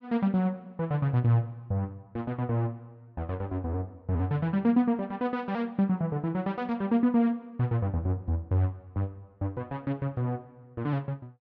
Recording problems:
none

